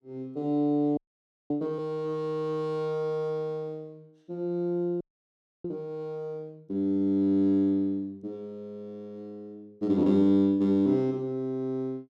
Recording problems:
frozen audio; at 1 s for 0.5 s and at 5 s for 0.5 s

